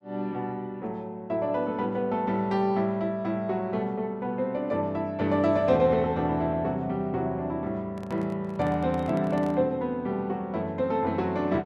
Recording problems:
handling noise; from 8 to 9.5 s; peak -10 dB vs average level

